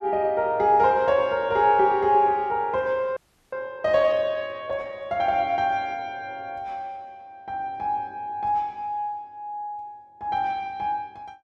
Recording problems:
frozen audio; at 3 s

